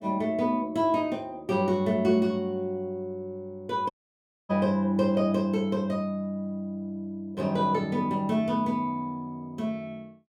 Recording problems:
audio cutting out; at 4 s for 0.5 s

